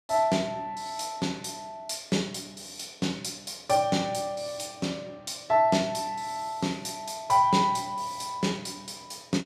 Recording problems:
none

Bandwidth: 14.5 kHz